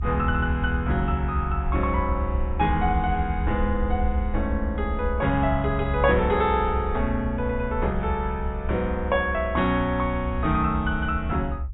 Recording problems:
treble cut off; nothing above 4 kHz
rumble; below 72 Hz, strongest tone 64 Hz, SNR 5 dB

